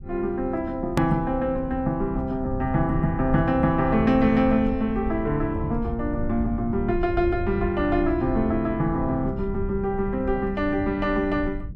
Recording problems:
low-frequency rumble; below 100 Hz, SNR 10 dB
click at an edit; at 1 s

